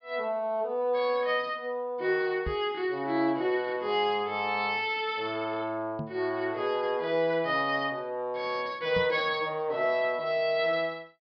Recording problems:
treble cut off; nothing above 5.5 kHz
microphone thump; at 2.5 s, at 6 s and at 9 s; peak -3 dB vs average level

